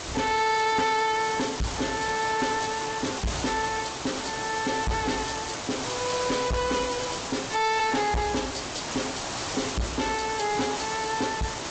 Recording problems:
codec artefacts; AAC, then G.722, log-spectral distance 18 dB, nothing above 8 kHz
distorted audio; hard clipping, signal-to-distortion ratio 8 dB
background hiss; slope -3 dB per octave, SNR 5 dB

